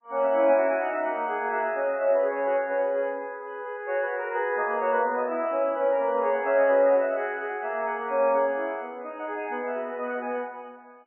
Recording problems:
lossy compression; MP3, log-spectral distance 2 dB, nothing above 2.5 kHz

